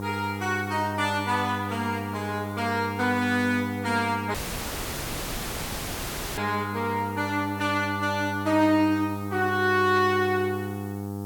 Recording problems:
hum; 50 Hz, harmonics up to 1.3 kHz, SNR 8 dB
background hiss; slope +4 dB per octave, SNR 24 dB
burst of static; at 4 s, at 8.5 s and at 10 s; peak -12 dB vs average level
dropout; at 4.5 s for 2 s

